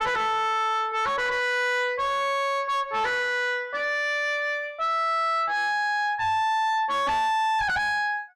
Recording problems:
distorted audio; soft clipping, signal-to-distortion ratio 6 dB

